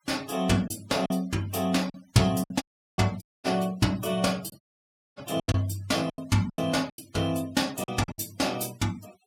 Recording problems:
denoising artefacts; signal-to-artefact ratio 21 dB
packet loss; 11% of the sound replaced, filled with silence
audio cutting out; at 2.5 s, at 3 s and at 4.5 s for 0.5 s

